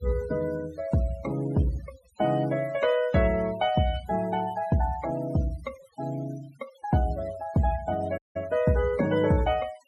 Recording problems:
denoising artefacts; signal-to-artefact ratio 21 dB
dropout; at 8 s

